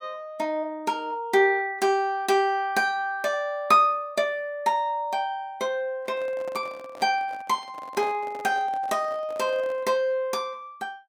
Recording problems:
microphone handling noise; from 6 to 10 s; peak -11 dB vs average level

